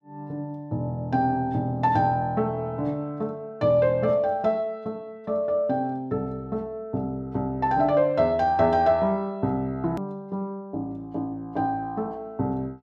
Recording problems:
hard cut with a click; at 10 s

